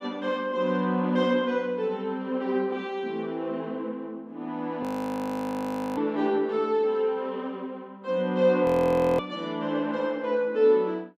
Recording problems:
frozen audio; at 5 s for 1 s and at 8.5 s for 0.5 s

